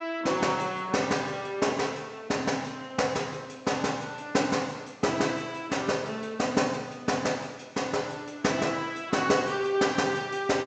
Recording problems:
low-pass filter; nothing above 8 kHz

